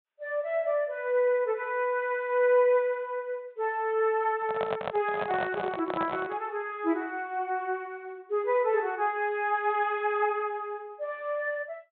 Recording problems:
low-pass filter; nothing above 4 kHz
microphone handling noise; from 4.5 to 6.5 s; peak 0 dB vs average level

